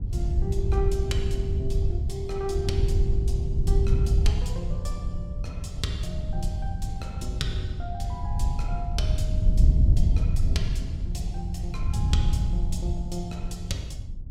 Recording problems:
wind on the microphone; below 86 Hz, SNR -7 dB

